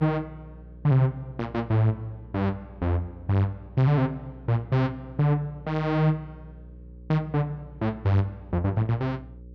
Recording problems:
hum; 60 Hz, harmonics up to 540 Hz, SNR 20 dB

